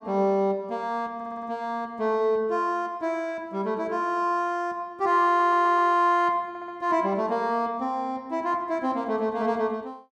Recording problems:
audio stuttering; at 1 s, at 5.5 s and at 6.5 s

